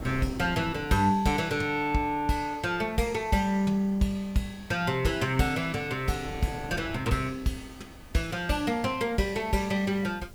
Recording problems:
background hiss; slope +2 dB per octave, SNR 29 dB
wind on the microphone; below 320 Hz, SNR 19 dB

